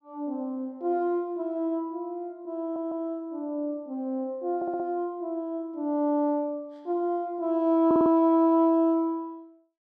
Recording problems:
audio stuttering; at 2.5 s, at 4.5 s and at 8 s

